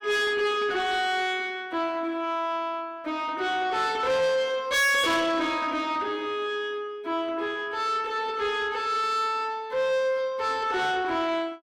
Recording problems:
distortion; soft clipping, signal-to-distortion ratio 7 dB

